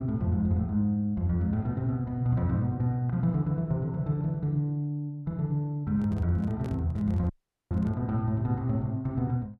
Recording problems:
handling noise; from 6 to 8 s; peak -10 dB vs average level
dropout; at 7.5 s

